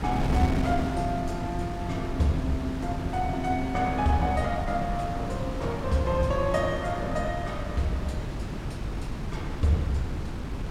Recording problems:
wind on the microphone; below 270 Hz, SNR 4 dB

